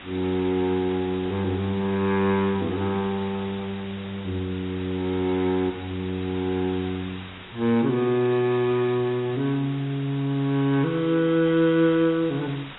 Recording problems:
lossy compression; AAC, log-spectral distance 13 dB, nothing above 3.3 kHz
background hiss; SNR 16 dB

